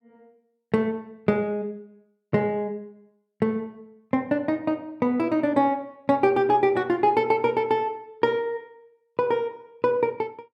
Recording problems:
none

